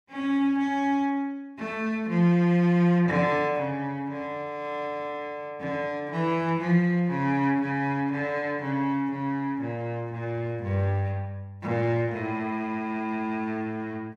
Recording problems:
none

